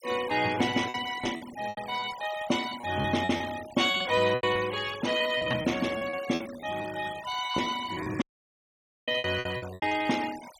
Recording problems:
noise reduction artefacts; signal-to-artefact ratio 15 dB
lost packets; 14% of the sound replaced, filled with repeated pitch periods
audio cutting out; at 8 s for 1 s

